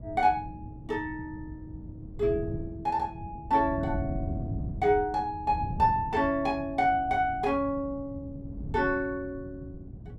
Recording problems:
wind noise; below 170 Hz, SNR 11 dB

